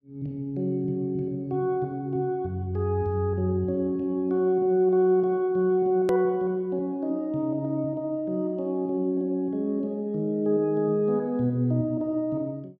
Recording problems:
edit click; at 6 s

